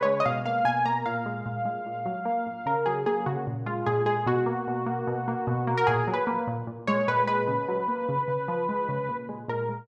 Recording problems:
none

